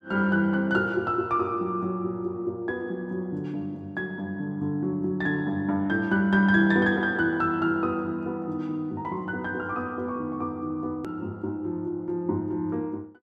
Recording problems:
hard cut with a click; at 11 s

